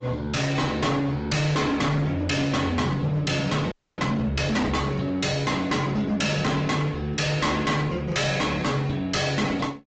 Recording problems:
treble missing; nothing above 7.6 kHz
lossy compression; Opus, log-spectral distance 3 dB
distorted audio; hard clipping, signal-to-distortion ratio 7 dB
frozen audio; at 3.5 s

